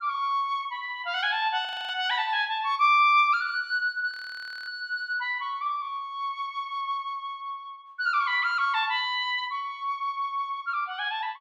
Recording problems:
audio freezing; at 1.5 s and at 4 s for 0.5 s

